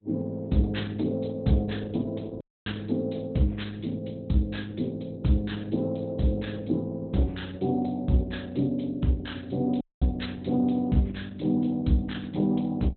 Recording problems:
lossy codec; Opus, log-spectral distance 5 dB, nothing above 4.1 kHz
audio cutting out; at 2.5 s and at 10 s

